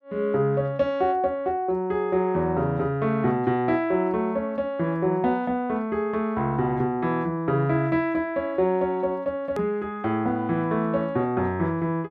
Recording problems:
edit click; at 9.5 s

